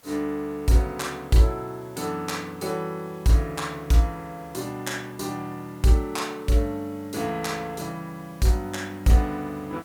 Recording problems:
hiss; slope -3 dB per octave, SNR 27 dB

